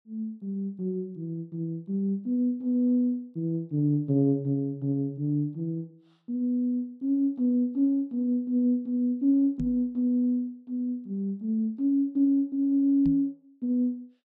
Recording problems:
microphone bump; at 9.5 s and at 13 s; peak -2 dB vs average level

